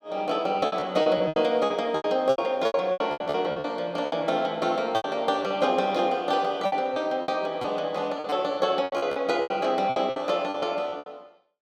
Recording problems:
packet loss; 15% of the sound replaced, filled with repeated pitch periods

